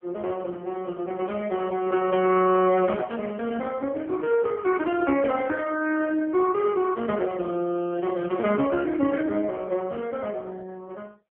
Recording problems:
telephone audio; 220 Hz to 3.1 kHz, AMR-NB

